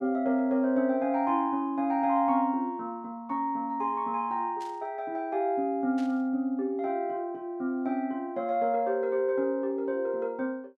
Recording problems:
burst of static; at 4.5 s and at 6 s; peak -15 dB vs average level

